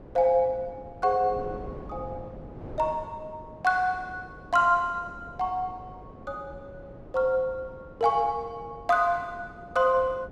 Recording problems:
wind noise; below 490 Hz, SNR 18 dB

